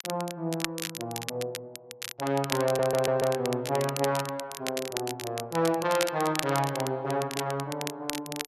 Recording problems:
crackling; vinyl, SNR 7 dB
stutter; at 2.5 s

